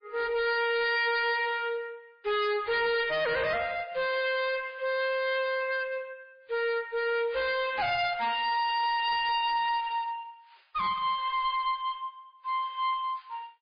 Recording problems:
lossy compression; MP3, log-spectral distance 3 dB, nothing above 4.2 kHz
distortion; hard clipping, uneven, signal-to-distortion ratio 6 dB

